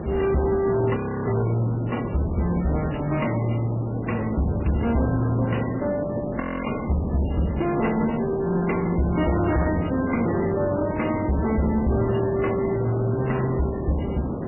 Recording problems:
lossy codec; MP3, log-spectral distance 5 dB, nothing above 2.8 kHz
distorted audio; soft clipping, signal-to-distortion ratio 6 dB
background hiss; SNR 6 dB
audio freezing; at 1 s and at 6.5 s

